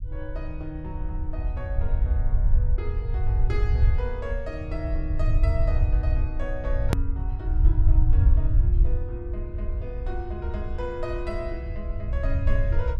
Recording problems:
rumble; below 74 Hz, SNR -10 dB
hard cut with a click; at 7 s

